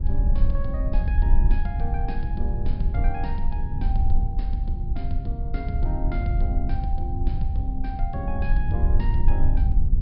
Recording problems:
treble cut off; nothing above 5.5 kHz
rumble; below 56 Hz, strongest tone 18 Hz, SNR -7 dB

